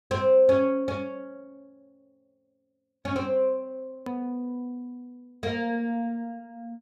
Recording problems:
edit click; at 4 s

